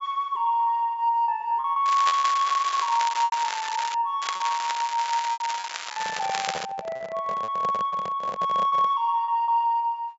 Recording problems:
low-pass filter; nothing above 8 kHz
lost packets; 7% of the sound replaced, filled with repeated pitch periods
crackle; from 2 to 4 s and from 4 to 6.5 s; loose cable, SNR 8 dB
handling noise; from 6 to 9 s; peak -6 dB vs average level

